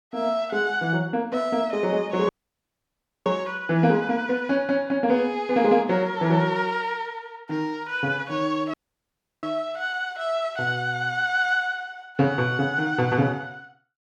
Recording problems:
audio cutting out; at 2.5 s for 1 s and at 8.5 s for 0.5 s

